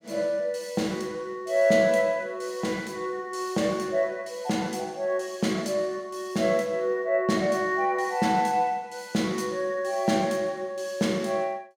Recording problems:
none

